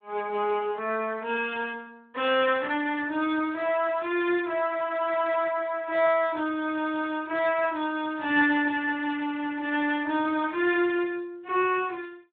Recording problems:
phone line; 240 Hz to 3.5 kHz, Speex

